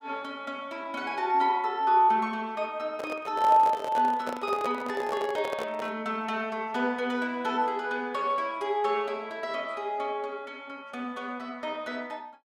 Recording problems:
microphone handling noise; from 3 to 6 s; peak -2 dB vs average level

